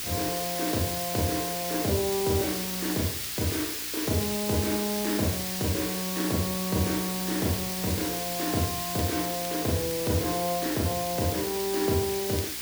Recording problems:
hum; 60 Hz, harmonics up to 1.3 kHz, SNR 21 dB
background hiss; SNR 1 dB
crackle; vinyl, SNR 24 dB

